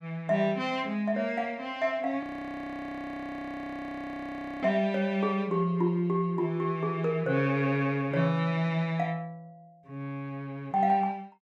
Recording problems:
frozen audio; at 2 s for 2.5 s

